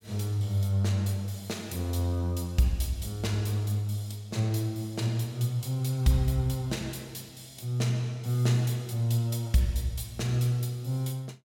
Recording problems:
none

